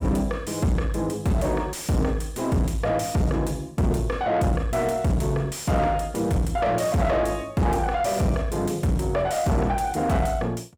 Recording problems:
distorted audio; soft clipping, signal-to-distortion ratio 7 dB

